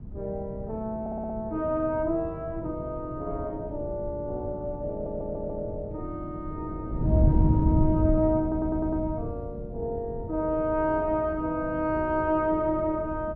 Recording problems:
wind on the microphone; below 150 Hz, SNR 4 dB
audio stuttering; at 1 s, at 5 s and at 8.5 s

